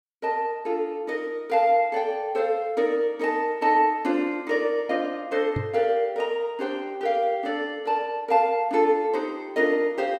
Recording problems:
microphone thump; at 5.5 s; peak 0 dB vs average level

